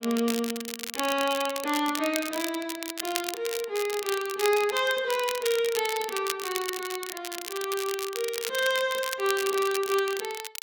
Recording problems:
crackling; vinyl, SNR 6 dB

